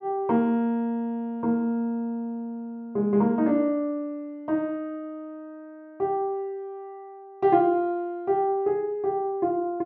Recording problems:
none

